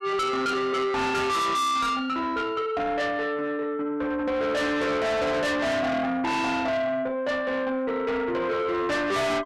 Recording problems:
distorted audio; soft clipping, signal-to-distortion ratio 6 dB

